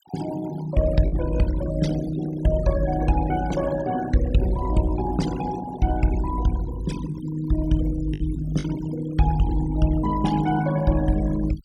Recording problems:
noise reduction artefacts; signal-to-artefact ratio 14 dB
packet loss; 1.4% of the sound replaced, filled with the last packet

